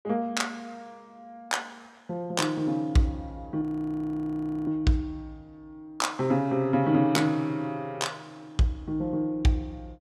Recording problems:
audio freezing; at 3.5 s for 1 s

